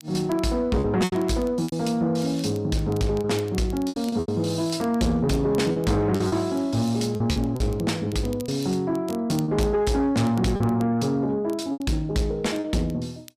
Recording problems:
distorted audio; soft clipping, signal-to-distortion ratio 12 dB
crackle; vinyl, SNR 24 dB
lost packets; 7% of the sound replaced, filled with repeated pitch periods

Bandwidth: 14.5 kHz